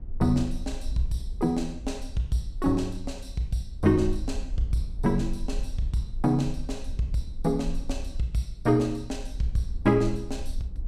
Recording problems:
low-frequency rumble; below 50 Hz, strongest tone 20 Hz, SNR 10 dB

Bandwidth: 15.5 kHz